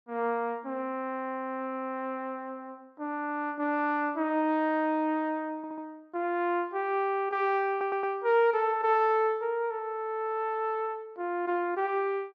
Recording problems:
audio stuttering; at 5.5 s and at 7.5 s

